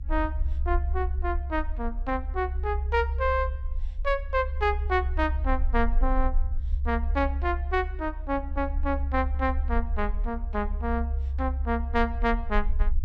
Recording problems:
low-frequency rumble; below 68 Hz, SNR 1 dB

